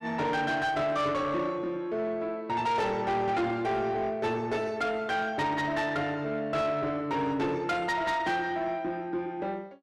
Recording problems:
distortion; soft clipping, signal-to-distortion ratio 10 dB

